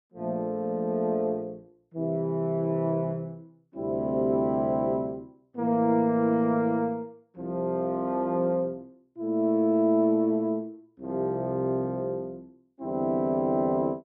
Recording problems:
none

